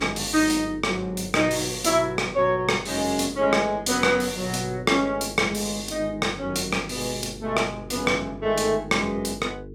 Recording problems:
hum; 50 Hz, harmonics up to 450 Hz, SNR 17 dB

